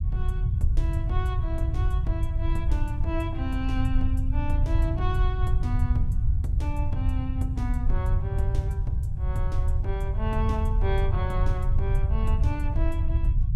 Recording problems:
rumble; below 90 Hz, SNR -8 dB

